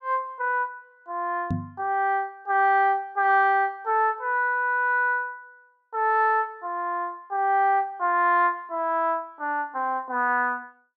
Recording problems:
microphone bump; at 1.5 s; peak 0 dB vs average level

